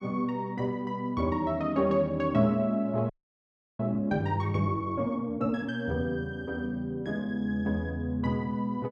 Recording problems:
frozen audio; at 3 s for 0.5 s

